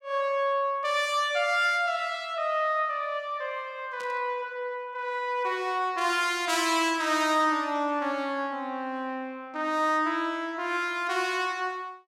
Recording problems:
static burst; at 4 s; peak -14 dB vs average level

